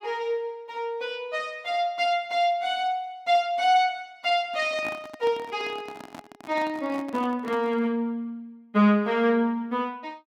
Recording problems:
microphone handling noise; from 4.5 to 8 s; peak -7 dB vs average level

